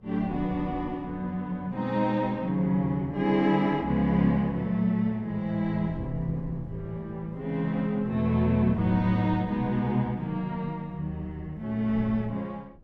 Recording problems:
wind noise; below 180 Hz, SNR 18 dB

